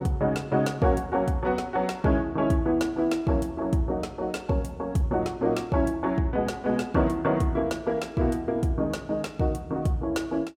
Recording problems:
none

